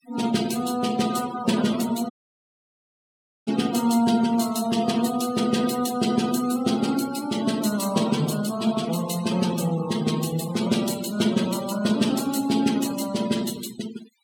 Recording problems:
noise reduction artefacts; signal-to-artefact ratio 15 dB
audio cutting out; at 2 s for 1.5 s

